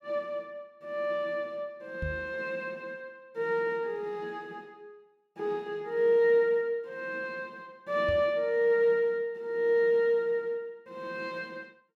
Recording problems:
microphone bump; at 2 s and at 8 s; peak -3 dB vs average level

